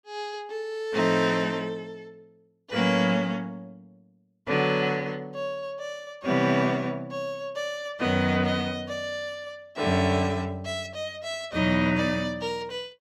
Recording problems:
none

